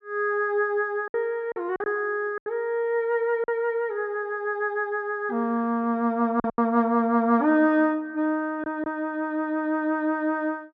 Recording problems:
packet loss; 4% of the sound replaced, filled with silence

